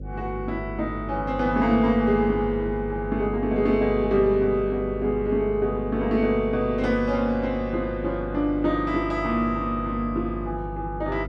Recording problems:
hum; 50 Hz, harmonics up to 550 Hz, SNR 11 dB

